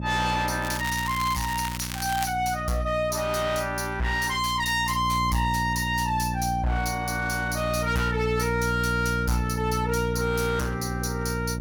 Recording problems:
distortion; hard clipping, uneven, signal-to-distortion ratio 8 dB
electrical hum; 60 Hz, harmonics up to 600 Hz, SNR 5 dB
crackle; from 0.5 to 2.5 s; loose cable, SNR 9 dB

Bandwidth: 18.5 kHz